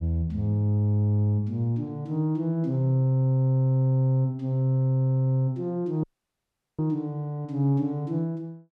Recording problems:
audio cutting out; at 6 s for 1 s

